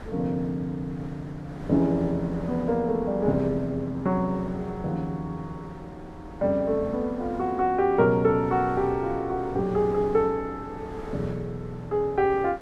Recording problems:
wind noise; below 570 Hz, SNR 16 dB

